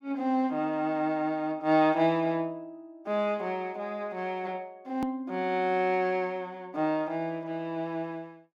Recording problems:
click at an edit; at 5 s

